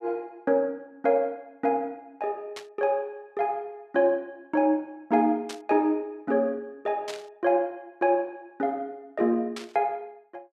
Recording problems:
burst of static; 4 times, first at 2.5 s; peak -6 dB vs average level

